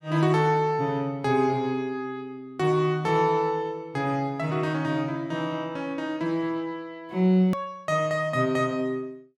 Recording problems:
hard cut with a click; at 7.5 s

